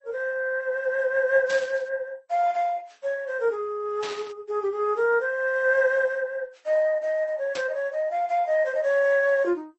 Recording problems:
codec artefacts; MP2, then MP3, log-spectral distance 2 dB
burst of static; at 1.5 s, at 4 s and at 7.5 s; peak -6 dB vs average level

